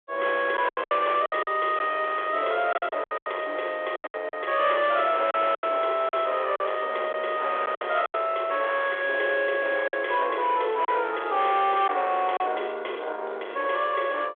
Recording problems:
telephone audio; 370 Hz to 3.5 kHz, G.726
distorted audio; soft clipping, signal-to-distortion ratio 11 dB
packet loss; 8% of the sound replaced, filled with silence

